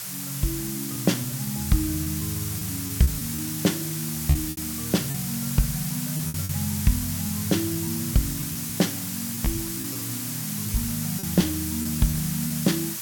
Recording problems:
electrical hum; 60 Hz, harmonics up to 600 Hz, SNR 24 dB
hiss; slope +2 dB per octave, SNR 2 dB
packet loss; 6% of the sound replaced, filled with repeated pitch periods
crackling; from 3 to 7 s and from 9 to 11 s; loose cable, SNR 28 dB

